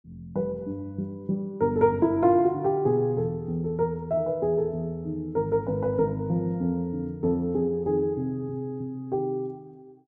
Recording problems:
none

